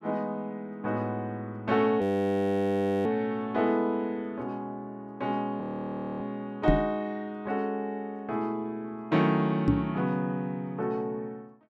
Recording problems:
audio freezing; at 2 s for 1 s and at 5.5 s for 0.5 s
microphone bump; at 6.5 s and at 9.5 s; peak +9 dB vs average level

